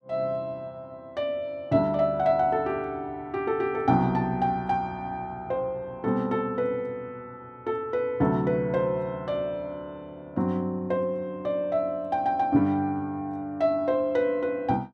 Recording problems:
none

